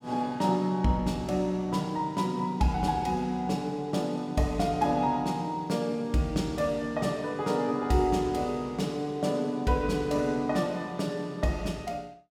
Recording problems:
none

